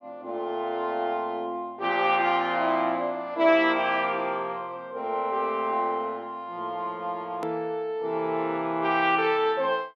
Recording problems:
edit click; at 7.5 s

